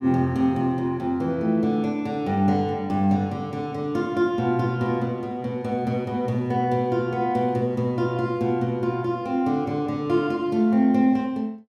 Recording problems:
none

